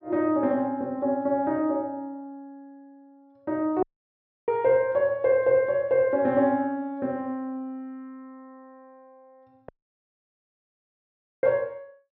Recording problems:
low-pass filter; nothing above 5.5 kHz
dropout; at 4 s for 0.5 s and at 9.5 s for 1.5 s

